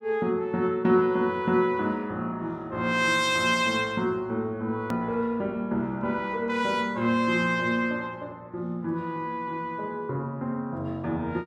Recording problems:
click at an edit; at 5 s

